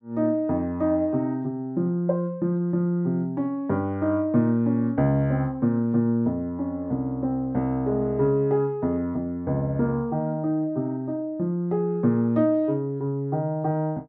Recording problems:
none

